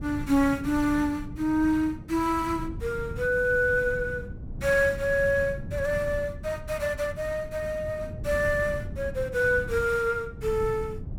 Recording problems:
wind noise; below 160 Hz, SNR 12 dB

